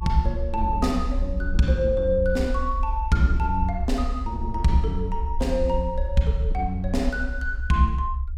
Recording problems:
low-frequency rumble; below 64 Hz, SNR 4 dB

